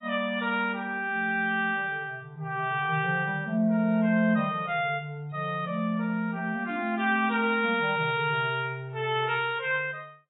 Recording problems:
lossy codec; AAC, log-spectral distance 2 dB, nothing above 3.1 kHz

